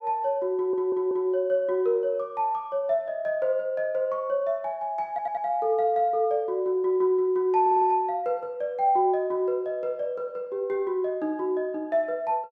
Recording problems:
audio stuttering; at 0.5 s, at 5 s and at 7.5 s

